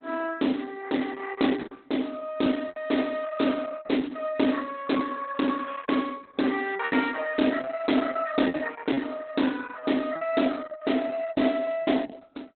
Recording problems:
lossy compression; Opus, log-spectral distance 5 dB, nothing above 4 kHz
lost packets; 6% of the sound replaced, filled with repeated pitch periods

